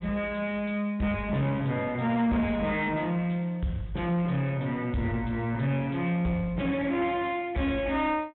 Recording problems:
treble missing; nothing above 3.8 kHz
distortion; soft clipping, signal-to-distortion ratio 11 dB

